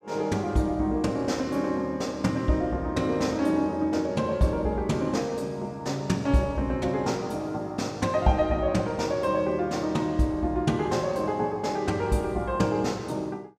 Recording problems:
none

